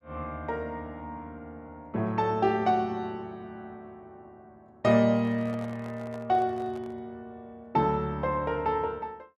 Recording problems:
microphone handling noise; from 5 to 7 s; peak -12 dB vs average level

